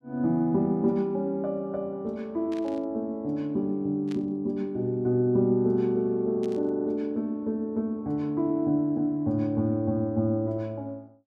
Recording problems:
static burst; at 2.5 s, at 4 s and at 6.5 s; peak -14 dB vs average level

